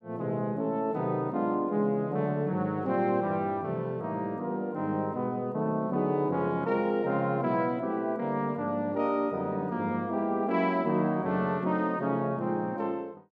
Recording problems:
none

